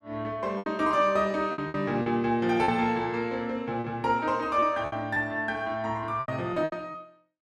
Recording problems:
lost packets; 9% of the sound replaced, filled with repeated pitch periods

